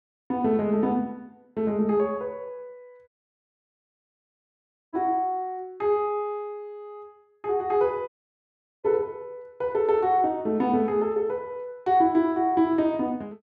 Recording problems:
audio cutting out; at 3 s for 2 s and at 8 s for 1 s

